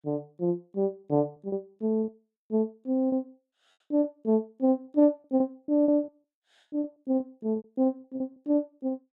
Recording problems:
packet loss; 11% of the sound replaced, filled with repeated pitch periods

